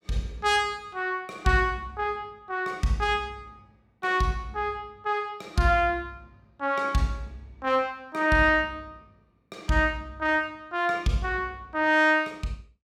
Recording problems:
none

